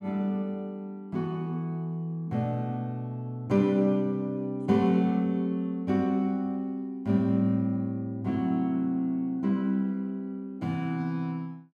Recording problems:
none

